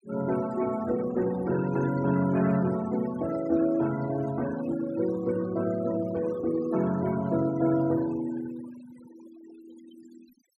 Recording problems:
denoising artefacts; signal-to-artefact ratio 17 dB

